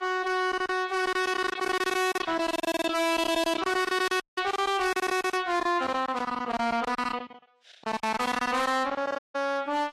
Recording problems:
lossy codec; Vorbis, log-spectral distance 3 dB, nothing above 14.6 kHz
distortion; soft clipping, signal-to-distortion ratio 6 dB
packet loss; 16% of the sound replaced, filled with silence
static burst; at 4 s and at 6 s; peak -10 dB vs average level
dropout; at 4 s and at 9 s

